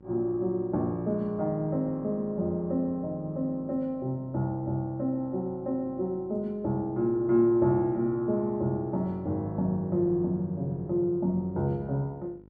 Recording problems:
electrical hum; 50 Hz, harmonics up to 1 kHz, SNR 25 dB

